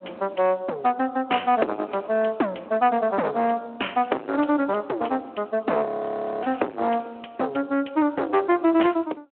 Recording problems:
telephone audio; 260 Hz to 3.1 kHz, Speex
distorted audio; soft clipping, signal-to-distortion ratio 8 dB
audio freezing; at 6 s for 0.5 s

